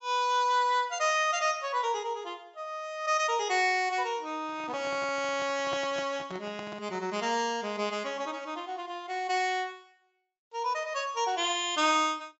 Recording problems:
low-pass filter; nothing above 7.6 kHz
handling noise; from 4.5 to 7 s; peak -6 dB vs average level

